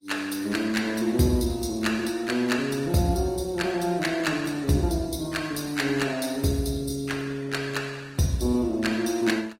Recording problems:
lossy codec; Opus, log-spectral distance 4 dB, nothing above 16 kHz

